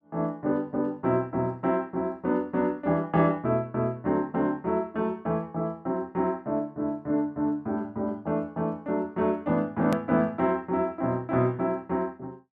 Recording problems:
hard cut with a click; at 10 s

